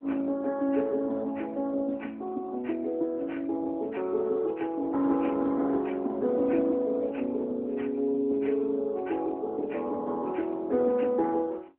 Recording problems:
telephone audio; 220 Hz to 3.7 kHz, AMR-NB

